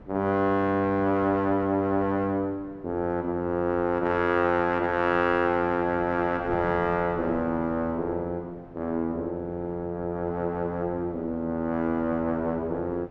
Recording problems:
wind noise; below 500 Hz, SNR 20 dB

